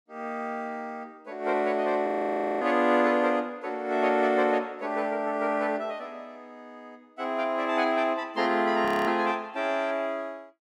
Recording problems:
audio freezing; at 2 s for 0.5 s and at 9 s

